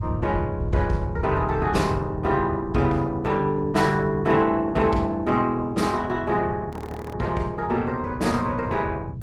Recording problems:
lossy codec; Opus, log-spectral distance 2 dB
rumble; below 130 Hz, SNR 9 dB
frozen audio; at 6.5 s

